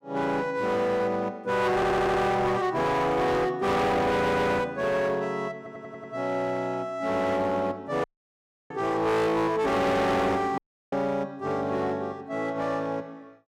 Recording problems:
distortion; hard clipping, signal-to-distortion ratio 8 dB
audio stuttering; at 2 s, at 4 s and at 5.5 s
audio cutting out; at 8 s for 0.5 s and at 11 s

